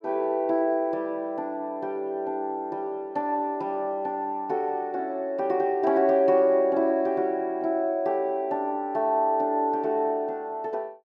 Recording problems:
none

